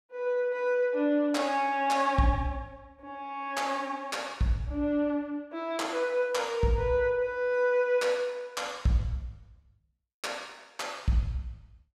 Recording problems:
none

